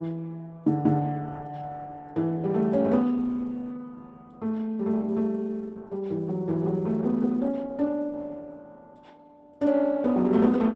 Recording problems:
lossy codec; Opus, log-spectral distance 2 dB

